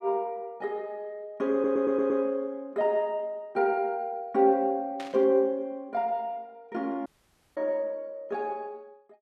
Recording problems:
stutter; at 1.5 s
static burst; at 5 s; peak -9 dB vs average level
dropout; at 7 s for 0.5 s

